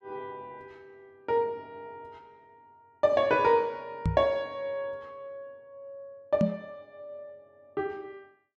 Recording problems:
knock on the microphone; at 4 s and at 6.5 s; peak +5 dB vs average level

